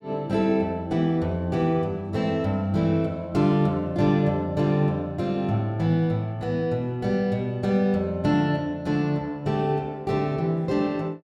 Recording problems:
none

